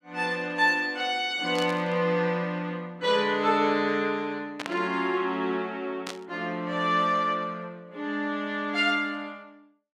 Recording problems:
static burst; at 1.5 s, at 4.5 s and at 6 s; peak -3 dB vs average level

